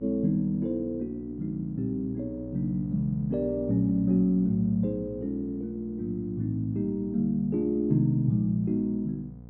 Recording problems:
mains hum; 60 Hz, harmonics up to 780 Hz, SNR 16 dB

